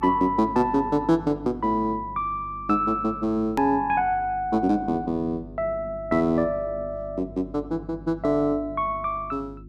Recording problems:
hum; 50 Hz, harmonics up to 350 Hz, SNR 18 dB
hard cut with a click; at 3.5 s

